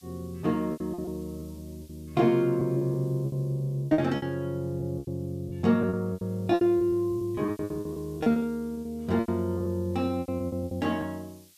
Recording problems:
hiss; slope +5 dB per octave, SNR 28 dB
lost packets; 15% of the sound replaced, filled with repeated pitch periods

